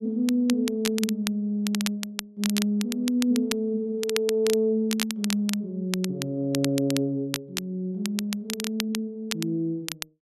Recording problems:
crackling; vinyl, SNR 7 dB

